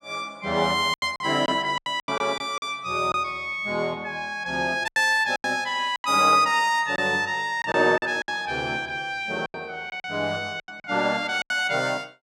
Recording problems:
lost packets; 9% of the sound replaced, filled with silence

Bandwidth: 15.5 kHz